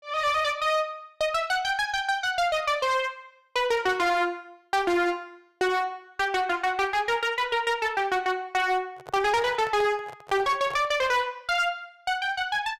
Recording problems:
distorted audio; hard clipping, uneven, signal-to-distortion ratio 9 dB
handling noise; from 9 to 11 s; peak -10 dB vs average level

